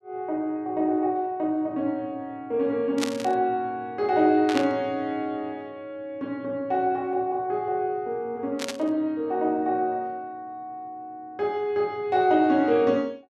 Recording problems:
static burst; at 3 s, at 4.5 s and at 8.5 s; peak +1 dB vs average level

